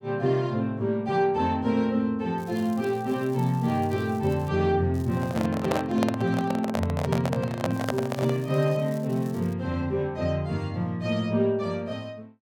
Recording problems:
crackle; from 2.5 to 4.5 s, at 5 s and from 7.5 to 9.5 s; loose cable, SNR 25 dB
microphone handling noise; from 5 to 8.5 s; peak +2 dB vs average level

